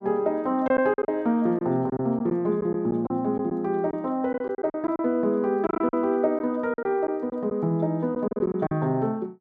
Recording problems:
packet loss; 9% of the sound replaced, filled with silence

